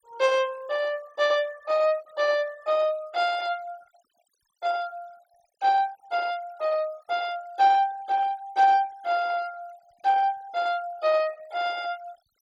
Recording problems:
noise reduction artefacts; signal-to-artefact ratio 24 dB

